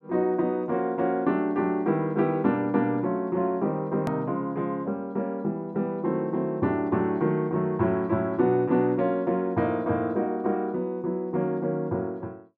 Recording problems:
click at an edit; at 4 s

